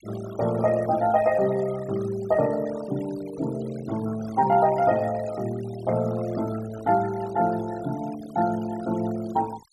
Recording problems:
noise reduction artefacts; signal-to-artefact ratio 18 dB

